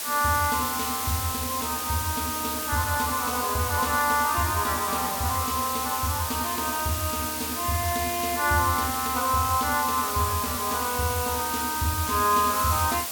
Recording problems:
background hiss; slope 0 dB per octave, SNR 3 dB

